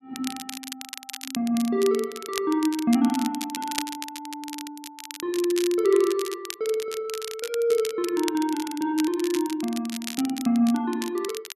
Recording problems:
crackle; vinyl, SNR 11 dB

